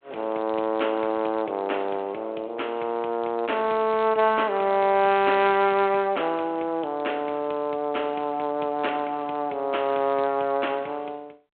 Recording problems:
telephone audio; 300 Hz to 3.4 kHz, G.726

